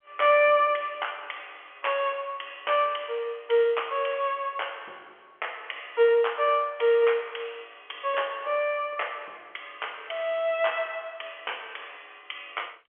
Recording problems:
telephone audio; 320 Hz to 3.3 kHz, G.711

